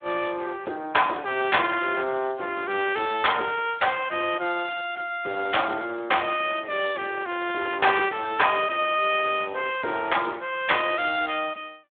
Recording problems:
phone line; 240 Hz to 3.5 kHz, Speex

